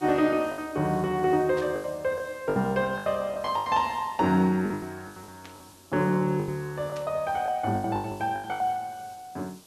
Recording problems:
background hiss; SNR 24 dB
packet loss; 13% of the sound replaced, filled with the last packet
static burst; at 1.5 s, at 5.5 s and at 7 s; peak -13 dB vs average level

